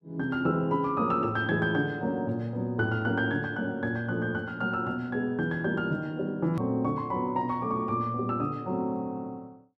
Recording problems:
click at an edit; at 6.5 s

